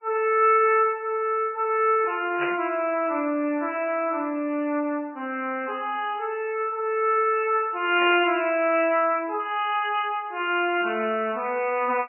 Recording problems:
lossy compression; MP3, log-spectral distance 3 dB, nothing above 2.5 kHz
static burst; at 2.5 s and at 8 s; peak -3 dB vs average level

